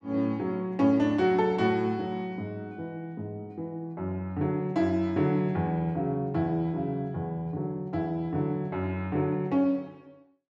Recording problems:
none

